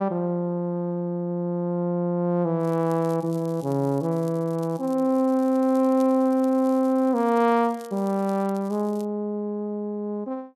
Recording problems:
crackle; from 2.5 to 9 s; loose cable, SNR 27 dB

